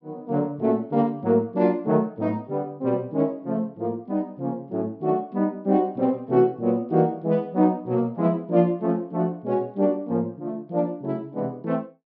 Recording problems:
treble missing; nothing above 6.1 kHz

